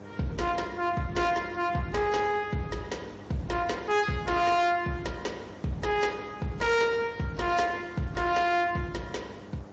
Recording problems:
lossy codec; MP3, then Speex, log-spectral distance 3 dB
distorted audio; soft clipping, signal-to-distortion ratio 11 dB
hum; 50 Hz, harmonics up to 1.2 kHz, SNR 19 dB
background hiss; SNR 21 dB

